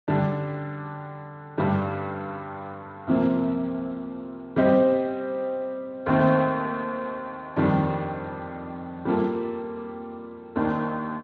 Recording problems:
lossy codec; Speex, log-spectral distance 2 dB

